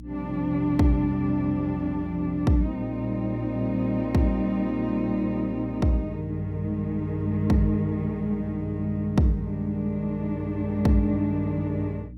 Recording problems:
hum; 60 Hz, harmonics up to 300 Hz, SNR 15 dB

